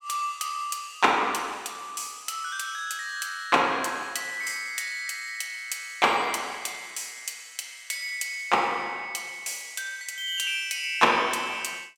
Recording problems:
none

